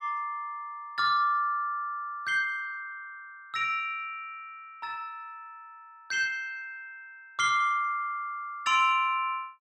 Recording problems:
none

